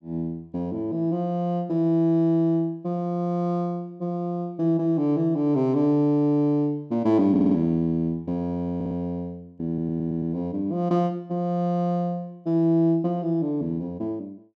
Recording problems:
stutter; at 7.5 s, at 9 s and at 9.5 s

